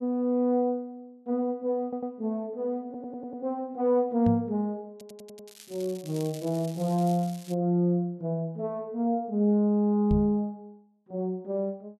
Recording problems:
stutter; at 2 s, at 3 s and at 5 s
microphone bump; at 4.5 s and at 10 s; peak +4 dB vs average level
crackling; from 5 to 7.5 s; loose cable, SNR 20 dB

